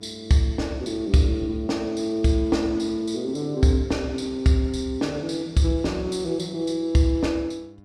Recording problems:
hum; 50 Hz, harmonics up to 1.4 kHz, SNR 27 dB

